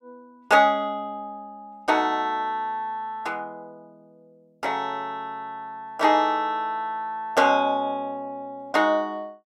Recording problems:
none

